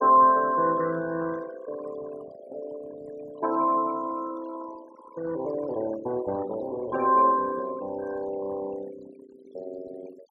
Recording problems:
denoising artefacts; signal-to-artefact ratio 18 dB

